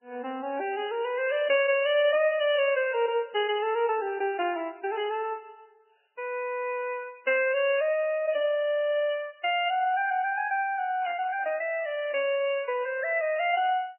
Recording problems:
lossy codec; MP3, log-spectral distance 3 dB, nothing above 2.4 kHz
static burst; at 4 s and at 11 s; peak -14 dB vs average level

